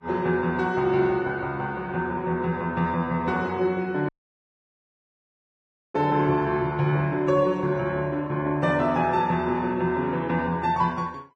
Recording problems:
lossy codec; Vorbis, log-spectral distance 2 dB, nothing above 10.1 kHz
audio cutting out; at 4 s for 2 s

